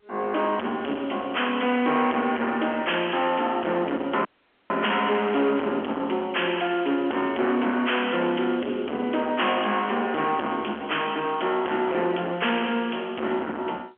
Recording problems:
phone line; 190 Hz to 3.2 kHz, G.711
distortion; hard clipping, signal-to-distortion ratio 6 dB
dropout; at 4.5 s

